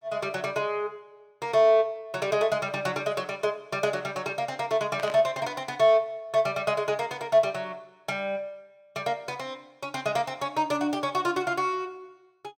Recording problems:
burst of static; at 5 s; peak -7 dB vs average level

